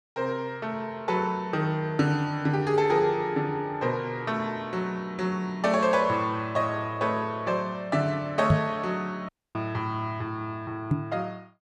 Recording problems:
knock on the microphone; at 8.5 s and at 11 s; peak +9 dB vs average level
dropout; at 9.5 s

